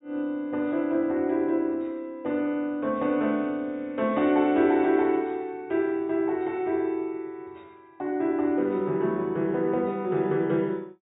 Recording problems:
low-pass filter; nothing above 4 kHz

